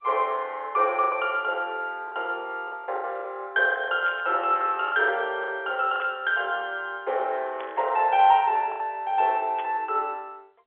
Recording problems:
phone line; 340 Hz to 3.5 kHz, G.711
packet loss; 6% of the sound replaced, filled with the last packet
burst of static; 4 times, first at 4 s; peak -11 dB vs average level

